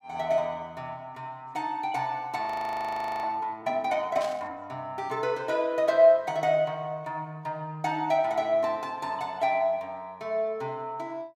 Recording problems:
frozen audio; at 2.5 s for 1 s
burst of static; at 4 s; peak -9 dB vs average level

